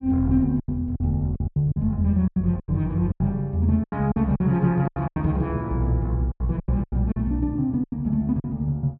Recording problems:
packet loss; 14% of the sound replaced, filled with silence

